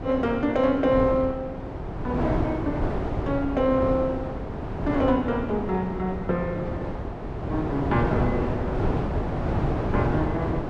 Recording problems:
wind on the microphone; below 540 Hz, SNR 3 dB

